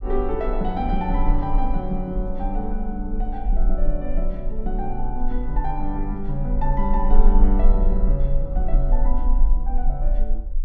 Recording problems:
low-frequency rumble; below 36 Hz, strongest tone 18 Hz, SNR -3 dB

